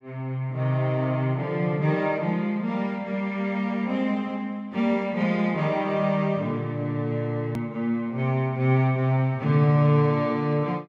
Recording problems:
hard cut with a click; at 7.5 s

